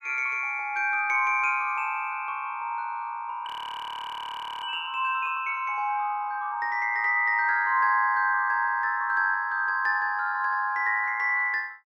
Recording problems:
audio freezing; at 3.5 s for 1 s

